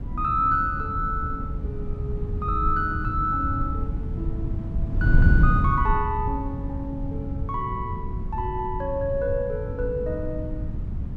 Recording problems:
wind on the microphone; below 120 Hz, SNR 1 dB

